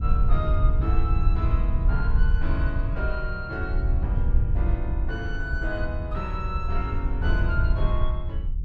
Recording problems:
low-frequency rumble; below 72 Hz, SNR -7 dB

